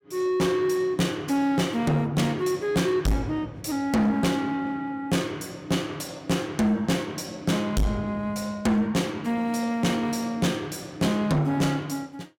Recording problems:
distorted audio; soft clipping, signal-to-distortion ratio 8 dB

